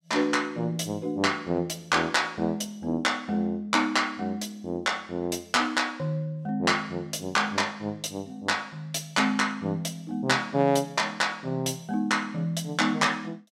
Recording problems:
none

